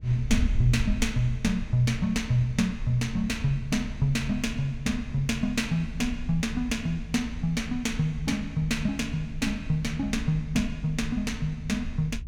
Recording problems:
wind on the microphone; below 68 Hz, SNR 10 dB

